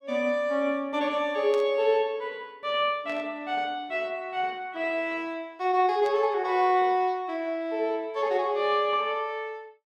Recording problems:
static burst; at 1.5 s, at 3 s and at 6 s; peak -12 dB vs average level

